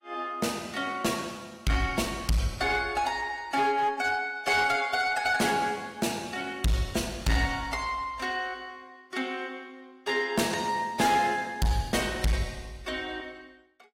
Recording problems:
lossy codec; AAC, log-spectral distance 3 dB, nothing above 15.5 kHz
distortion; hard clipping, uneven, signal-to-distortion ratio 12 dB

